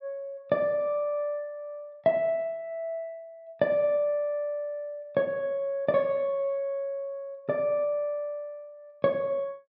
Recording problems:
none

